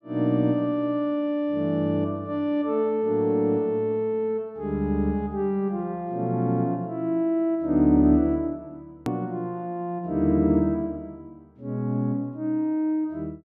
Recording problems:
hard cut with a click; at 9 s

